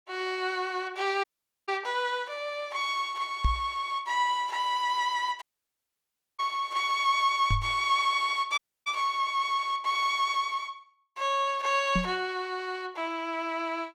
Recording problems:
audio cutting out; at 1 s, at 5.5 s for 1 s and at 8.5 s
microphone thump; at 3.5 s, at 7.5 s and at 12 s; peak +5 dB vs average level

